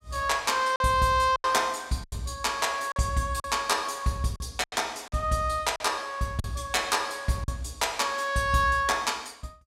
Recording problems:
packet loss; 6% of the sound replaced, filled with silence

